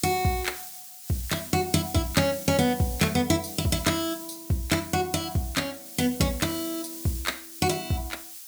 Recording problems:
hiss; slope +6 dB per octave, SNR 11 dB

